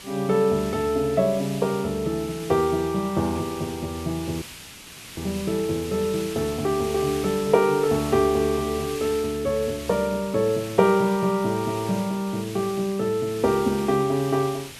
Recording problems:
background hiss; SNR 14 dB
dropout; at 4.5 s for 1 s

